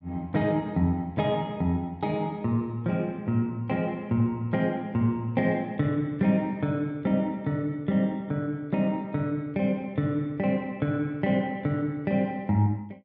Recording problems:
none

